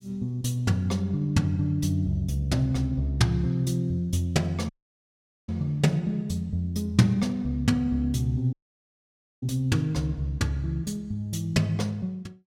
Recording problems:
audio cutting out; at 4.5 s for 1 s and at 8.5 s for 1 s

